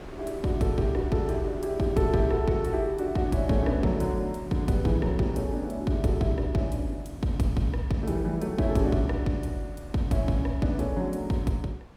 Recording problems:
wind noise; below 630 Hz, SNR 21 dB

